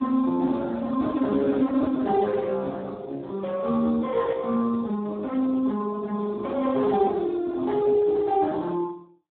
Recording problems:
phone line; 190 Hz to 2.1 kHz, Speex

